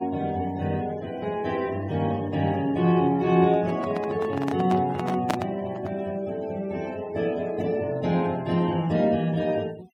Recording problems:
denoising artefacts; signal-to-artefact ratio 23 dB
microphone handling noise; from 3.5 to 6 s; peak +4 dB vs average level

